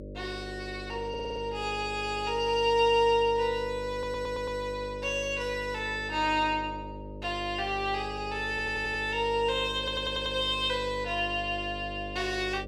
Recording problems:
hum; 50 Hz, harmonics up to 600 Hz, SNR 12 dB
stutter; 4 times, first at 1 s

